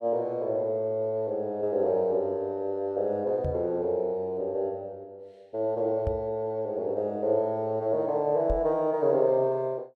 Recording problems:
microphone thump; at 3.5 s, at 6 s and at 8.5 s; peak 0 dB vs average level

